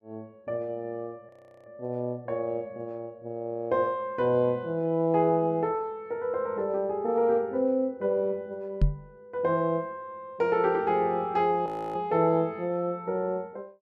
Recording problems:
audio freezing; at 1.5 s and at 12 s
microphone bump; at 9 s; peak +7 dB vs average level

